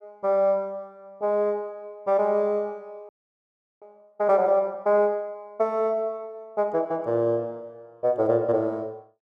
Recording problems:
audio freezing; at 3 s for 0.5 s

